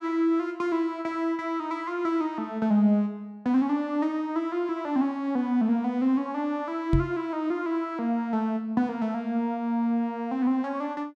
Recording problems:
knock on the microphone; at 7 s; peak +6 dB vs average level

